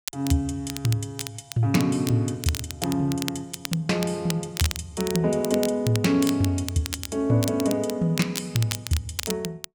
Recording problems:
crackle; vinyl, SNR 9 dB

